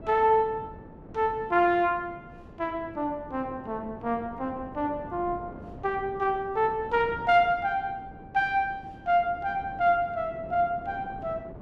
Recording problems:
wind on the microphone; below 440 Hz, SNR 17 dB

